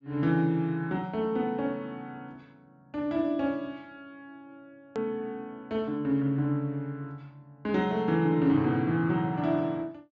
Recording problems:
treble missing; nothing above 8 kHz
edit click; at 5 s

